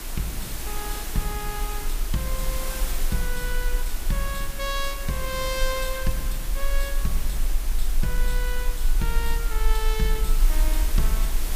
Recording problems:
hiss; slope -2 dB per octave, SNR 3 dB
low-frequency rumble; below 38 Hz, strongest tone 22 Hz, SNR -2 dB

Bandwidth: 15 kHz